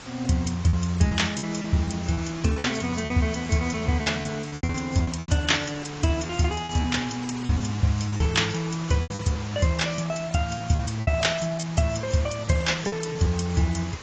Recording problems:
lossy codec; AAC, log-spectral distance 7 dB, nothing above 7.6 kHz
hiss; slope -2 dB per octave, SNR 13 dB
packet loss; 11% of the sound replaced, filled with repeated pitch periods

